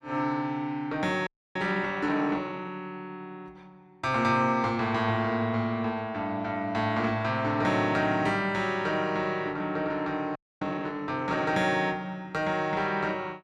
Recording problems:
frozen audio; at 1.5 s and at 10 s

